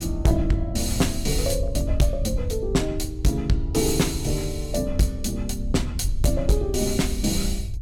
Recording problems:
distortion; hard clipping, uneven, signal-to-distortion ratio 12 dB
rumble; below 76 Hz, SNR 6 dB

